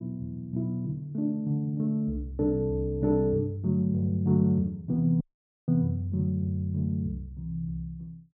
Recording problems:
audio cutting out; at 5 s

